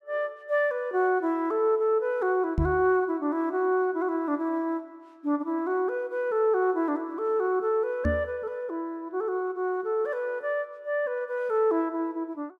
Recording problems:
microphone thump; at 2.5 s and at 8 s; peak +4 dB vs average level

